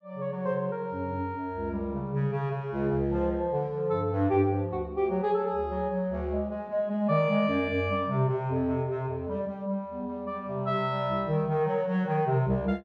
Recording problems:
none

